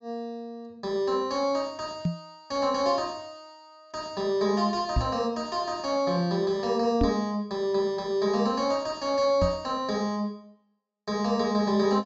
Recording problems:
low-pass filter; nothing above 8 kHz
microphone thump; 4 times, first at 2 s; peak +5 dB vs average level

